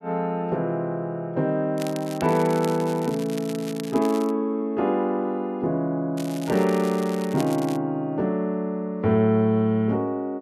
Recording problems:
crackle; from 2 to 4.5 s and from 6 to 8 s; loose cable, SNR 17 dB

